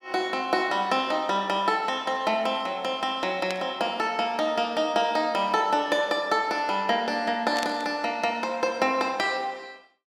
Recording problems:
burst of static; at 3.5 s and at 7.5 s; peak -3 dB vs average level

